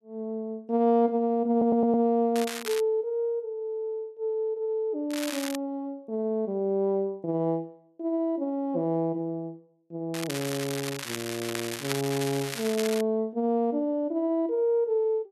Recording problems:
stutter; at 1.5 s
crackle; at 2.5 s, at 5 s and from 10 to 13 s; loose cable, SNR 8 dB

